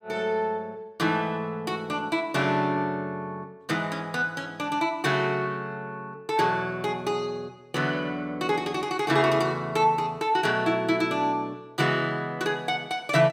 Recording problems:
none

